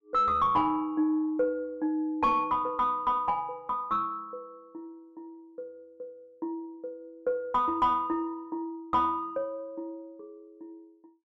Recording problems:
distorted audio; soft clipping, signal-to-distortion ratio 10 dB

